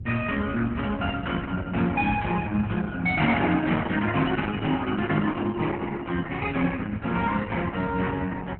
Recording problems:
lossy codec; Opus, log-spectral distance 3 dB
wind noise; below 150 Hz, SNR 10 dB

